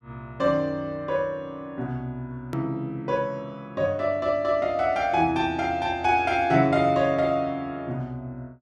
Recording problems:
edit click; at 2.5 s

